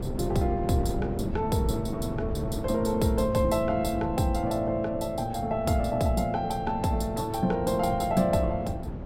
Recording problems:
wind on the microphone; below 260 Hz, SNR 8 dB

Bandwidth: 16 kHz